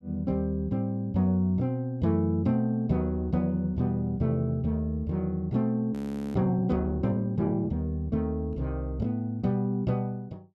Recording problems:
audio freezing; at 6 s

